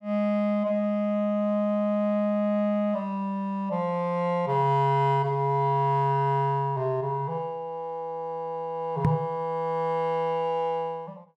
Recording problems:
microphone thump; at 9 s; peak +6 dB vs average level

